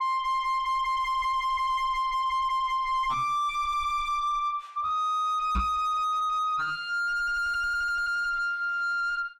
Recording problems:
distorted audio; soft clipping, signal-to-distortion ratio 6 dB
microphone thump; at 5.5 s; peak +6 dB vs average level

